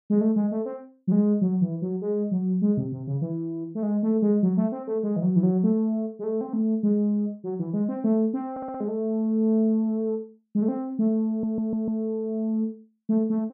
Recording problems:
stutter; at 8.5 s and at 11 s

